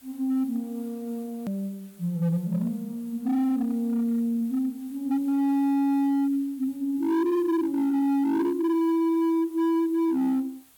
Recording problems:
distortion; hard clipping, signal-to-distortion ratio 12 dB
hiss; slope 0 dB per octave, SNR 27 dB
edit click; at 1.5 s

